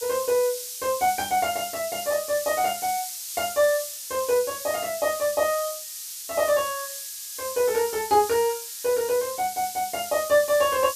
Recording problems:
background hiss; SNR 8 dB

